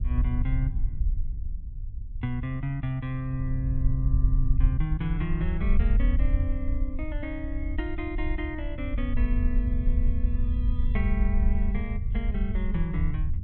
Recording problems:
low-frequency rumble; below 66 Hz, SNR -4 dB

